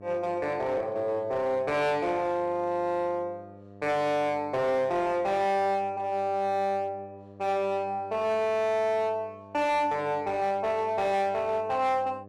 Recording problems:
distorted audio; hard clipping, uneven, signal-to-distortion ratio 11 dB
mains hum; 50 Hz, harmonics up to 1.2 kHz, SNR 21 dB

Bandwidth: 12.5 kHz